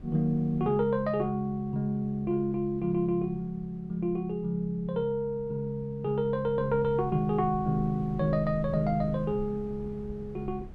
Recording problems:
wind on the microphone; below 180 Hz, SNR 17 dB

